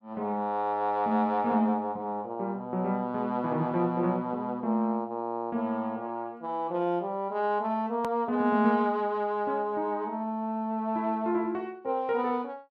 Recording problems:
edit click; at 8 s

